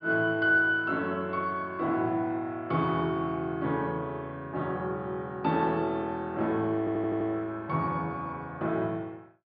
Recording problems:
treble cut off; nothing above 5.5 kHz
audio stuttering; at 7 s

